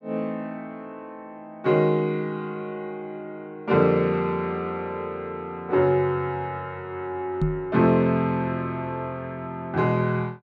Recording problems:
microphone thump; at 7.5 s; peak +4 dB vs average level

